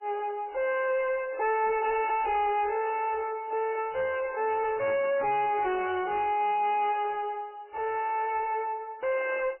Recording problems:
codec artefacts; MP3, log-spectral distance 3 dB, nothing above 2.7 kHz
distorted audio; soft clipping, signal-to-distortion ratio 7 dB

